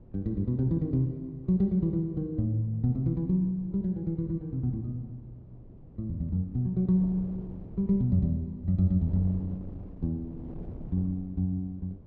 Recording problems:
wind noise; below 230 Hz, SNR 18 dB

